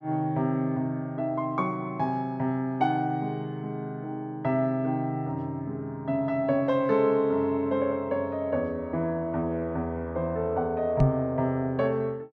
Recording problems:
microphone thump; at 11 s; peak +9 dB vs average level

